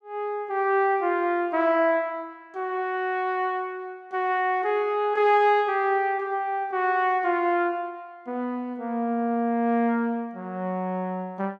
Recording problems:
none

